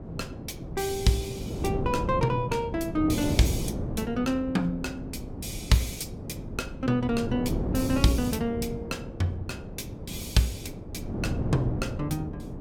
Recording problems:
wind on the microphone; below 320 Hz, SNR 5 dB

